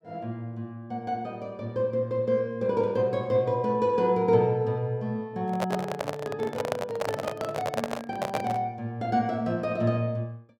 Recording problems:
handling noise; from 5.5 to 8.5 s; peak +3 dB vs average level

